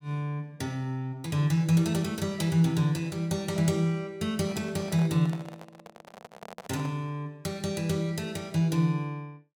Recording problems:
handling noise; from 4.5 to 7 s; peak -9 dB vs average level

